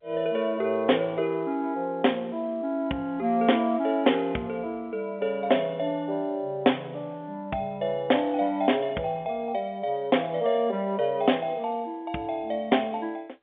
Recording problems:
telephone audio; 190 Hz to 3.5 kHz, G.711

